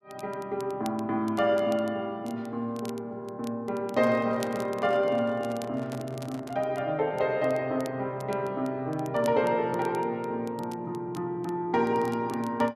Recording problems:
crackle; vinyl, SNR 23 dB
handling noise; from 4 to 6.5 s; peak -10 dB vs average level

